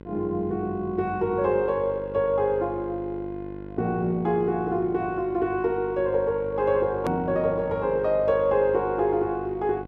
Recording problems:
electrical hum; 50 Hz, harmonics up to 1.5 kHz, SNR 15 dB
click at an edit; at 7 s

